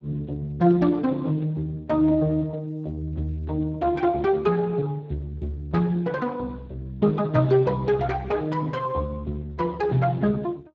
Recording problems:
lossy codec; Speex, log-spectral distance 2 dB

